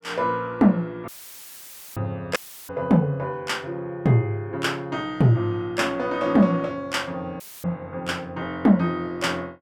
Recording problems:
audio cutting out; at 1 s for 1 s, at 2.5 s and at 7.5 s; filled with static

